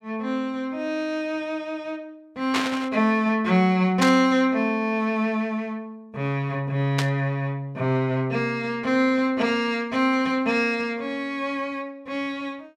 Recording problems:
static burst; at 2.5 s, at 4 s and at 7 s; peak +3 dB vs average level

